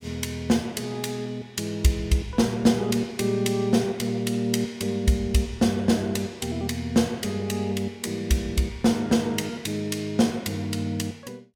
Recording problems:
none

